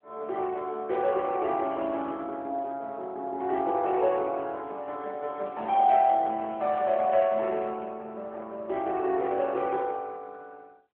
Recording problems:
telephone audio; 300 Hz to 3.3 kHz, AMR-NB

